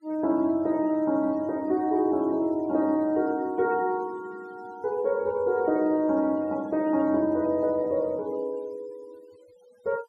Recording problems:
noise reduction artefacts; signal-to-artefact ratio 28 dB

